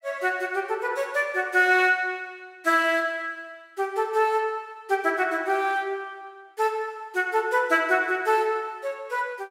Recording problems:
none

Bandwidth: 16 kHz